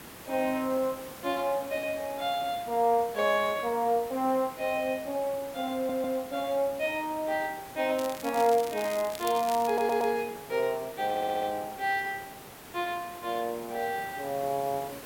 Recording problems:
hiss; slope -4 dB per octave, SNR 15 dB
stutter; at 6 s, at 9.5 s and at 11 s
crackle; from 8 to 10 s; loose cable, SNR 13 dB

